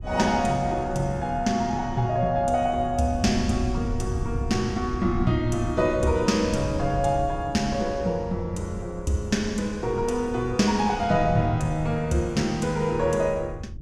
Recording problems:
wind noise; below 110 Hz, SNR 10 dB

